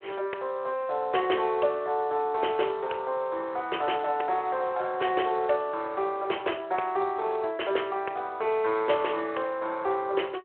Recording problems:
phone line; 320 Hz to 3.2 kHz, Speex

